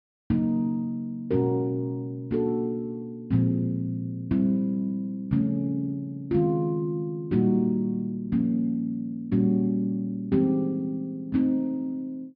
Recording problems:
treble missing; nothing above 5.5 kHz

